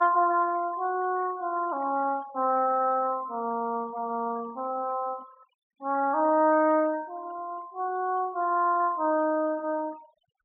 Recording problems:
treble cut off; nothing above 4 kHz
noise reduction artefacts; signal-to-artefact ratio 24 dB

